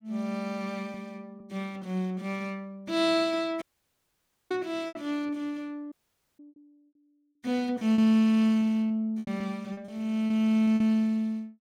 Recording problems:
packet loss; 6% of the sound replaced, filled with repeated pitch periods
audio cutting out; at 3.5 s for 1 s and at 6 s

